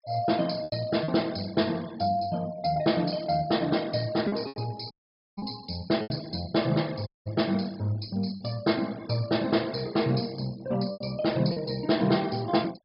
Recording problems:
treble cut off; nothing above 5.5 kHz
noise reduction artefacts; signal-to-artefact ratio 21 dB
packet loss; 4% of the sound replaced, filled with repeated pitch periods
audio cutting out; at 5 s and at 7 s

